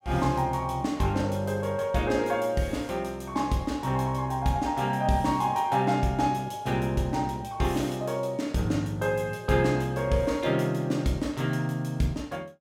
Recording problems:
none

